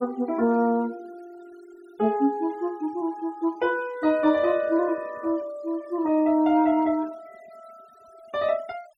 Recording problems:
denoising artefacts; signal-to-artefact ratio 27 dB

